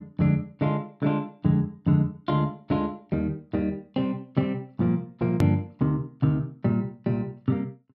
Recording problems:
hard cut with a click; at 5.5 s

